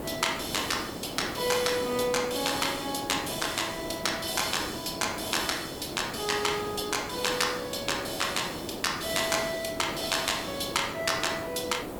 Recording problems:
hiss; slope -9 dB per octave, SNR 9 dB

